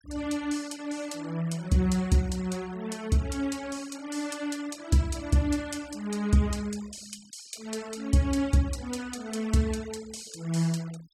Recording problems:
denoising artefacts; signal-to-artefact ratio 21 dB

